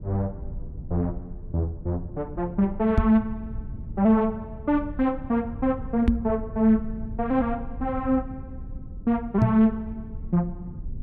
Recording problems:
rumble; below 110 Hz, SNR 13 dB
microphone bump; at 3 s, at 6 s and at 9.5 s; peak +8 dB vs average level

